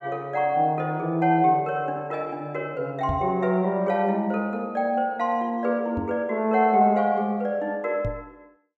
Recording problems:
microphone bump; at 3 s, at 6 s and at 8 s; peak -2 dB vs average level

